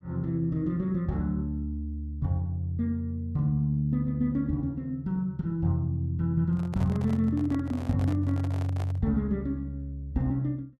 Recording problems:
handling noise; from 6.5 to 9 s; peak -9 dB vs average level

